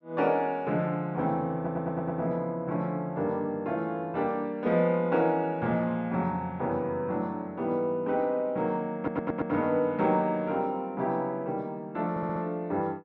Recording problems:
audio stuttering; at 1.5 s, at 9 s and at 12 s

